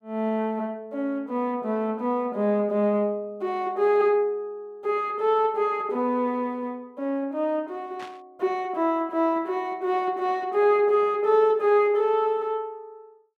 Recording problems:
burst of static; at 8 s; peak -13 dB vs average level

